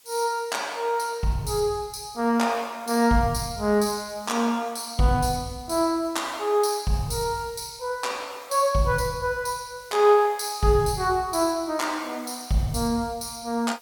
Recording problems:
background hiss; slope +1 dB per octave, SNR 26 dB

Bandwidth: 18 kHz